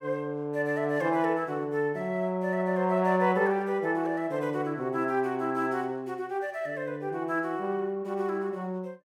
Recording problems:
none

